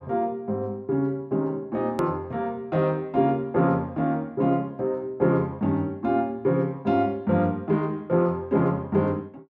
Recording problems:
hard cut with a click; at 2 s

